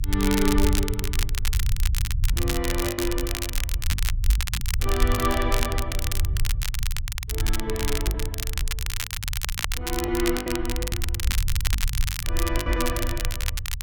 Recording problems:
low-frequency rumble; below 72 Hz, SNR 0 dB
crackling; vinyl, SNR 2 dB
lost packets; 7% of the sound replaced, filled with the last packet

